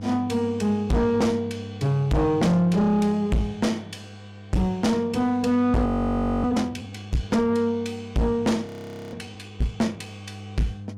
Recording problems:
distorted audio; soft clipping, signal-to-distortion ratio 6 dB
hum; 50 Hz, harmonics up to 500 Hz, SNR 16 dB
frozen audio; at 6 s for 0.5 s and at 8.5 s

